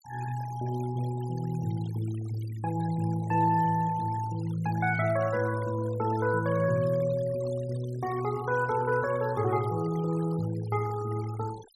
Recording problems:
noise reduction artefacts; signal-to-artefact ratio 19 dB

